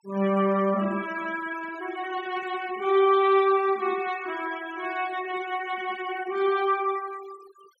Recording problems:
denoising artefacts; signal-to-artefact ratio 20 dB

